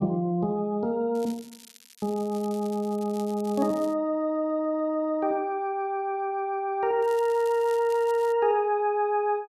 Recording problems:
crackling; from 1 to 4 s and from 7 to 8.5 s; loose cable, SNR 22 dB

